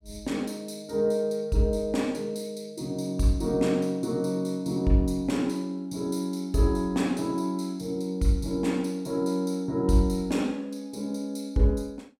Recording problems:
none

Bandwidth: 16 kHz